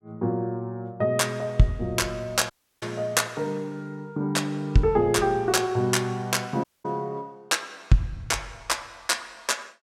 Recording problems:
dropout; at 2.5 s and at 6.5 s

